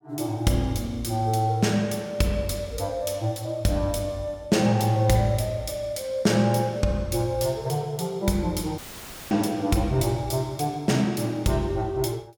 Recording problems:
audio cutting out; at 9 s for 0.5 s; filled with static

